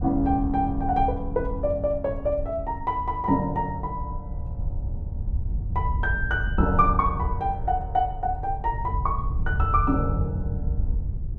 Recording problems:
wind on the microphone; below 88 Hz, SNR 5 dB

